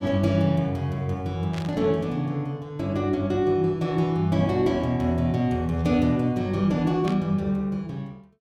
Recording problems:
burst of static; at 1.5 s and at 7 s; peak -8 dB vs average level

